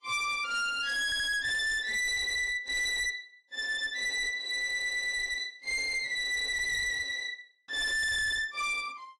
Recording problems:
lossy codec; AAC, log-spectral distance 2 dB
distortion; hard clipping, signal-to-distortion ratio 6 dB
stutter; at 1 s and at 4.5 s

